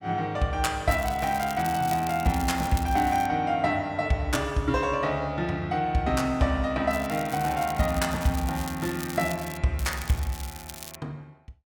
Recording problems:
crackling; from 1 to 3.5 s, from 7 to 9.5 s and from 10 to 11 s; loose cable, SNR 14 dB

